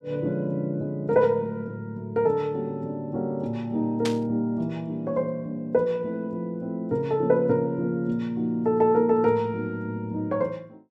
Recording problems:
burst of static; at 4 s; peak -1 dB vs average level

